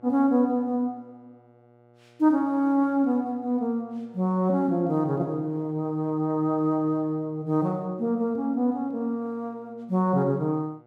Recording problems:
hum; 60 Hz, harmonics up to 1.6 kHz, SNR 31 dB

